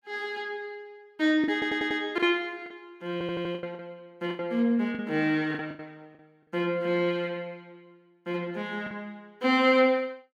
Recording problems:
packet loss; 7% of the sound replaced, filled with the last packet
stutter; at 1.5 s and at 3 s

